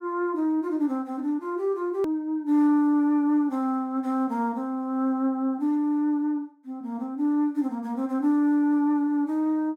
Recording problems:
click at an edit; at 2 s

